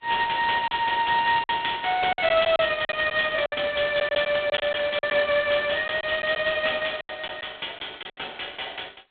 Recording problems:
phone line; 240 Hz to 3.5 kHz, G.726
lost packets; 8% of the sound replaced, filled with silence

